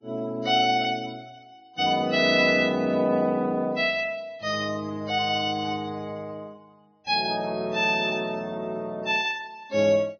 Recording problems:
lossy compression; Vorbis, log-spectral distance 3 dB, nothing above 5.2 kHz

